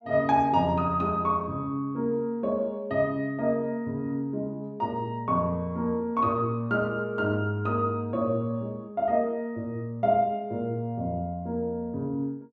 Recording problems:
none

